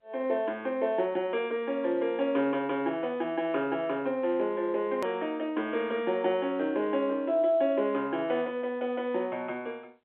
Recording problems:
phone line; 260 Hz to 3.5 kHz, G.711
hard cut with a click; at 5 s

